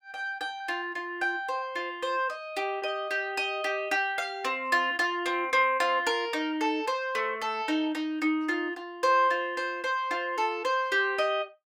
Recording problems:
packet loss; 0.9% of the sound replaced, filled with repeated pitch periods

